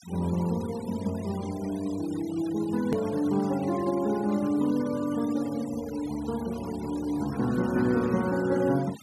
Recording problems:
noise reduction artefacts; signal-to-artefact ratio 18 dB
edit click; at 3 s

